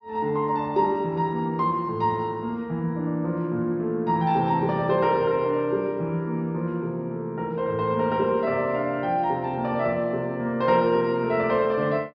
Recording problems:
low-pass filter; nothing above 6 kHz

